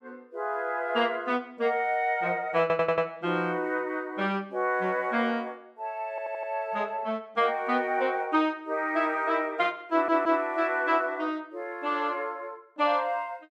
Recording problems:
stutter; at 2.5 s, at 6 s and at 10 s

